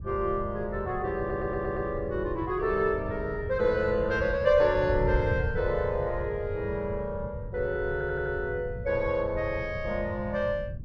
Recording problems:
wind on the microphone; below 130 Hz, SNR 9 dB
stutter; at 1 s and at 8 s

